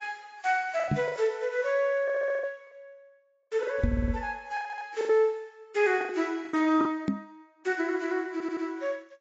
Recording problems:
lossy codec; AAC, log-spectral distance 2 dB, nothing above 7.3 kHz
packet loss; 9% of the sound replaced, filled with the last packet
microphone bump; at 1 s, at 4 s and at 7 s; peak +6 dB vs average level
audio stuttering; 4 times, first at 2 s

